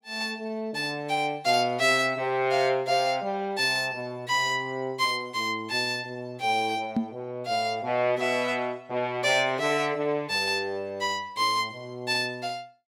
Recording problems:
knock on the microphone; at 7 s; peak +4 dB vs average level

